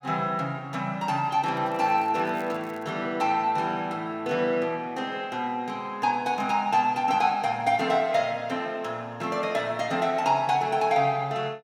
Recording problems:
crackling; from 1.5 to 3 s; loose cable, SNR 30 dB

